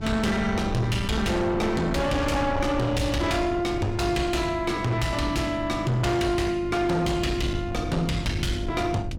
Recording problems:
distortion; soft clipping, signal-to-distortion ratio 7 dB
hum; 50 Hz, harmonics up to 900 Hz, SNR 14 dB
low-frequency rumble; below 170 Hz, SNR 10 dB

